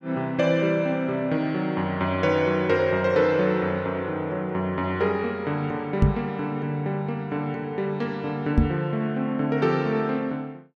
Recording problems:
microphone thump; at 6 s and at 8.5 s; peak +9 dB vs average level

